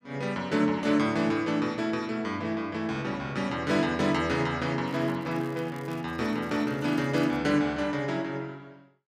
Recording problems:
crackle; from 5 to 7.5 s; loose cable, SNR 27 dB

